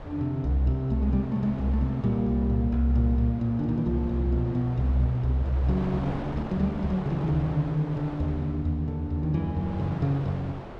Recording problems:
wind on the microphone; below 820 Hz, SNR 14 dB

